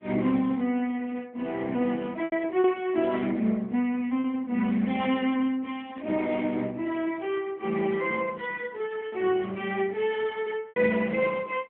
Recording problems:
telephone audio; 150 Hz to 3.4 kHz, AMR-NB
packet loss; 2% of the sound replaced, filled with repeated pitch periods
burst of static; at 2.5 s, at 6 s and at 8 s; peak -19 dB vs average level

